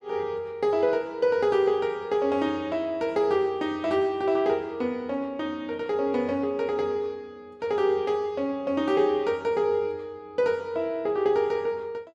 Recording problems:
none

